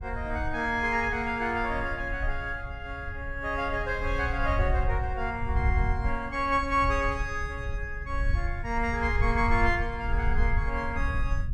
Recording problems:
low-frequency rumble; below 72 Hz, SNR 4 dB

